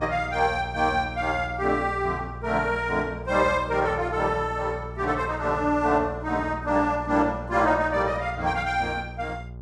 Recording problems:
electrical hum; 60 Hz, harmonics up to 780 Hz, SNR 13 dB

